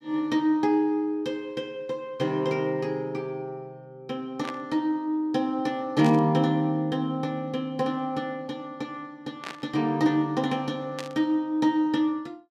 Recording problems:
static burst; 4 times, first at 4.5 s; peak -5 dB vs average level

